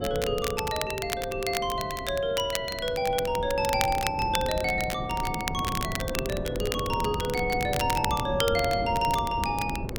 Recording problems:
wind noise; below 320 Hz, SNR 8 dB
crackling; vinyl, SNR 8 dB

